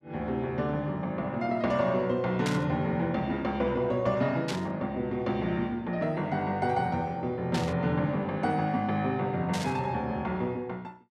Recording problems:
static burst; 4 times, first at 2.5 s; peak -1 dB vs average level

